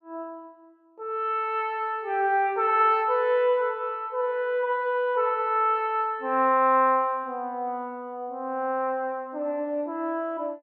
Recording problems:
none

